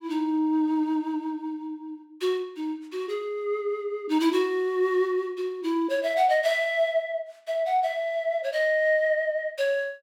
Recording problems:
none

